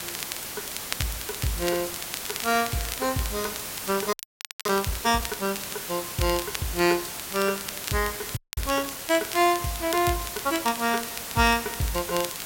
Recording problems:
hiss; slope -1 dB per octave, SNR 6 dB
crackling; vinyl, SNR 11 dB
frozen audio; at 4 s for 0.5 s and at 8.5 s

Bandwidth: 16.5 kHz